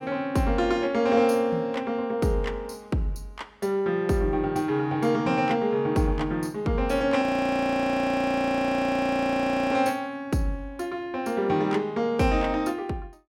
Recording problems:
audio freezing; at 7 s for 2.5 s

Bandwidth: 16.5 kHz